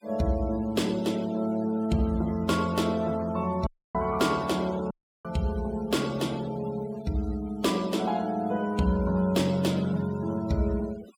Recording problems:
noise reduction artefacts; signal-to-artefact ratio 19 dB
audio cutting out; at 3.5 s and at 5 s

